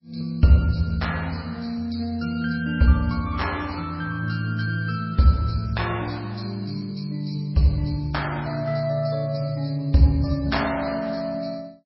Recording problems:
codec artefacts; MP3, log-spectral distance 3 dB, nothing above 5.5 kHz

